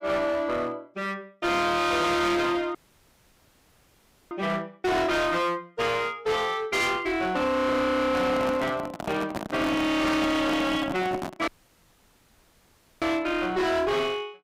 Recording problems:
distorted audio; hard clipping, uneven, signal-to-distortion ratio 6 dB
dropout; at 3 s for 1.5 s and at 11 s for 1.5 s
handling noise; from 8 to 13 s; peak -2 dB vs average level

